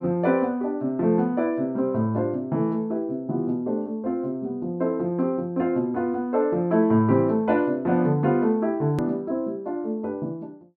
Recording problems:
click at an edit; at 9 s

